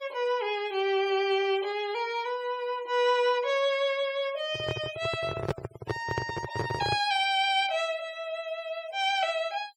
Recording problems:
denoising artefacts; signal-to-artefact ratio 21 dB
handling noise; from 4.5 to 7 s; peak +2 dB vs average level

